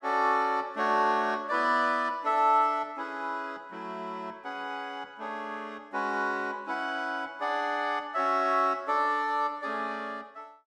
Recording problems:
none

